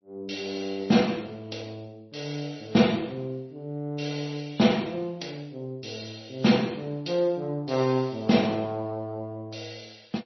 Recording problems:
lossy codec; MP3, log-spectral distance 5 dB, nothing above 5.8 kHz

